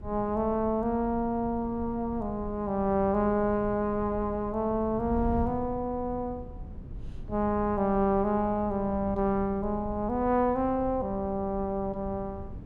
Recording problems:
wind on the microphone; below 140 Hz, SNR 13 dB

